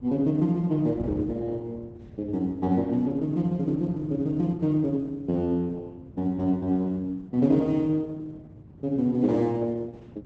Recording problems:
codec artefacts; Opus, log-spectral distance 2 dB
wind on the microphone; below 230 Hz, SNR 18 dB

